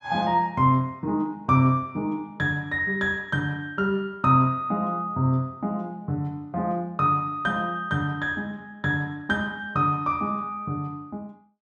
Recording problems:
none

